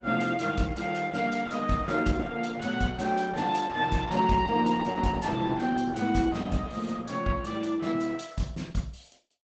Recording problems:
lossy codec; Opus, log-spectral distance 4 dB, nothing above 7.8 kHz

